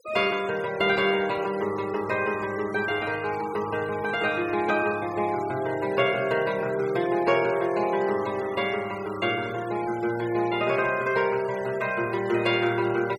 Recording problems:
noise reduction artefacts; signal-to-artefact ratio 17 dB

